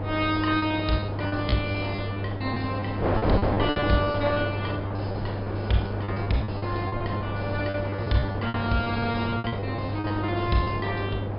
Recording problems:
low-pass filter; nothing above 5.5 kHz
mains hum; 50 Hz, harmonics up to 700 Hz, SNR 4 dB
wind noise; below 720 Hz, SNR 3 dB
packet loss; 13% of the sound replaced, filled with repeated pitch periods

